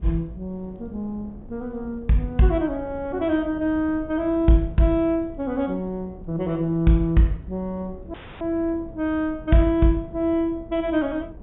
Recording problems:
treble cut off; nothing above 3.7 kHz
wind noise; below 210 Hz, SNR 19 dB
audio cutting out; at 8 s

